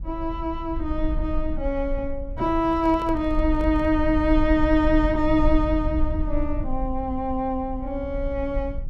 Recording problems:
rumble; below 58 Hz, SNR 6 dB
handling noise; from 2.5 to 4 s; peak -9 dB vs average level

